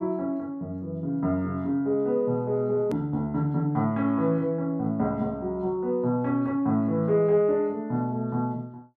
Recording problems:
click at an edit; at 3 s

